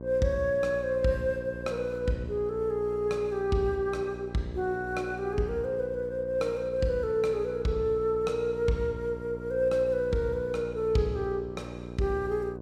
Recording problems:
mains hum; 60 Hz, harmonics up to 1.1 kHz, SNR 12 dB

